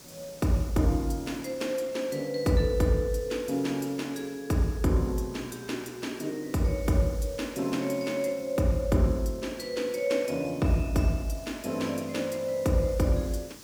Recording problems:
hiss; SNR 20 dB

